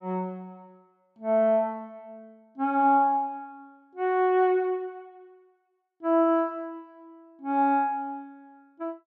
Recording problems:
none

